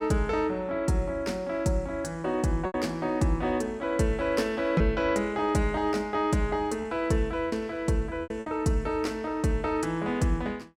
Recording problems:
lost packets; 3% of the sound replaced, filled with repeated pitch periods

